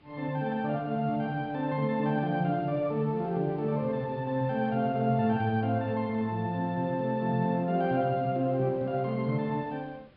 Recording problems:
low-pass filter; nothing above 5.5 kHz
hiss; SNR 30 dB

